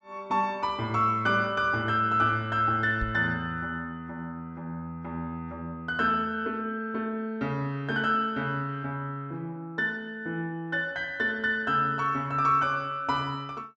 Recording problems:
treble missing; nothing above 8 kHz
knock on the microphone; at 3 s; peak -2 dB vs average level

